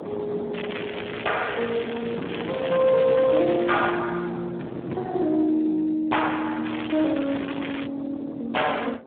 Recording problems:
phone line; 190 Hz to 3.7 kHz, Speex
distortion; soft clipping, signal-to-distortion ratio 12 dB
wind on the microphone; below 670 Hz, SNR 14 dB
crackle; from 0.5 to 4 s and from 6.5 to 8 s; loose cable, SNR 10 dB

